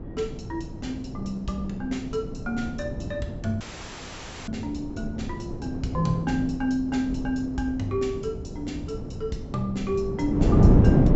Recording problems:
treble cut off; nothing above 7.7 kHz
wind on the microphone; below 280 Hz, SNR -1 dB
dropout; at 3.5 s for 1 s

